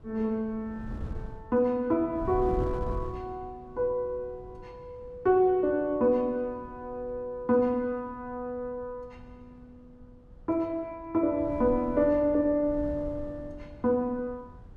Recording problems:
wind on the microphone; below 150 Hz, SNR 15 dB

